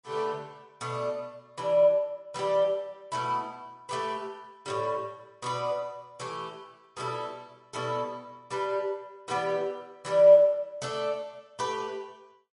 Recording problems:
codec artefacts; MP3, log-spectral distance 2 dB, nothing above 10.4 kHz

